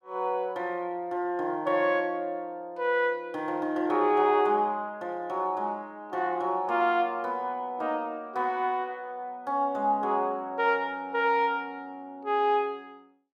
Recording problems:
none

